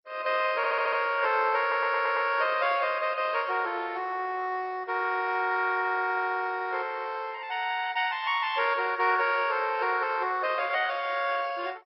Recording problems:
lossy compression; MP2, log-spectral distance 4 dB, nothing above 5.2 kHz
audio stuttering; at 0.5 s and at 1.5 s

